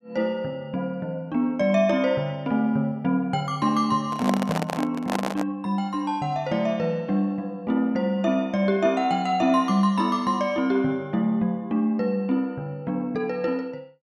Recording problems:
handling noise; from 4 to 5.5 s; peak +2 dB vs average level

